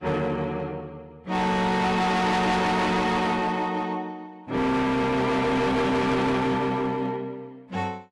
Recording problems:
lossy compression; AAC, log-spectral distance 2 dB, nothing above 11.6 kHz
distorted audio; hard clipping, signal-to-distortion ratio 8 dB

